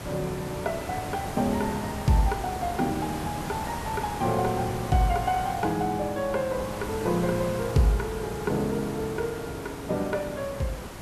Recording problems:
background hiss; slope -5 dB per octave, SNR 8 dB

